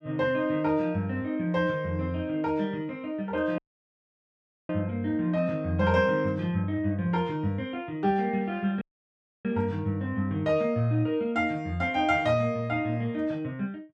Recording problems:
audio cutting out; at 3.5 s for 1 s and at 9 s for 0.5 s

